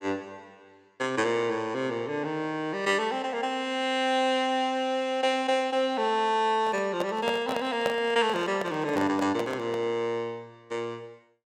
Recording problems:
handling noise; from 6.5 to 10 s; peak +1 dB vs average level

